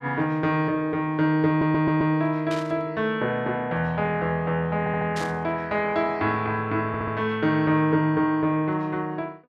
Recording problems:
audio stuttering; at 1.5 s, at 5 s and at 7 s
burst of static; at 2.5 s and at 5 s; peak -7 dB vs average level

